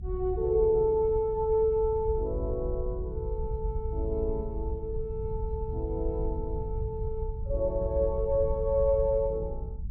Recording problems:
rumble; below 76 Hz, SNR 6 dB

